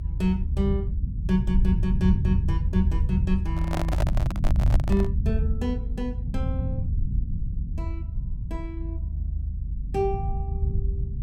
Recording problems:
rumble; below 98 Hz, SNR -2 dB
microphone handling noise; from 3.5 to 5 s; peak +2 dB vs average level

